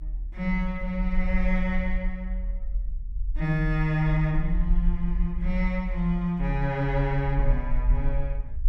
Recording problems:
low-frequency rumble; below 42 Hz, SNR 3 dB

